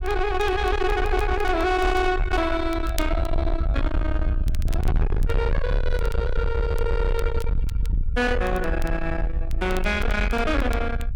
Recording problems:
distortion; soft clipping, signal-to-distortion ratio 6 dB
rumble; below 74 Hz, SNR 2 dB
crackle; vinyl, SNR 21 dB

